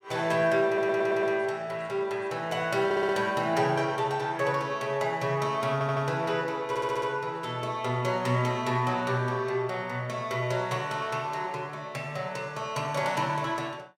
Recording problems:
stutter; 4 times, first at 0.5 s

